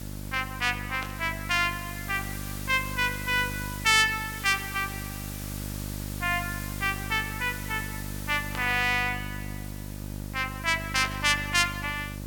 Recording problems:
hum; 50 Hz, harmonics up to 850 Hz, SNR 11 dB
background hiss; slope 0 dB per octave, SNR 14 dB
static burst; at 1 s, at 8.5 s and at 11 s; peak -6 dB vs average level

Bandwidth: 17.5 kHz